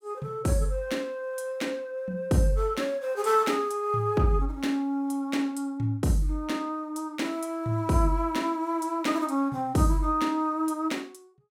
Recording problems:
none

